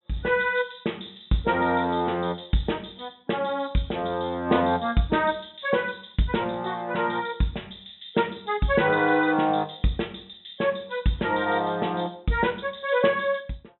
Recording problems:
treble cut off; nothing above 3.9 kHz

